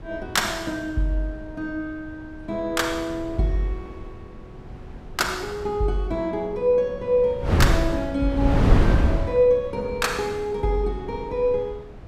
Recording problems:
wind noise; below 190 Hz, SNR 0 dB

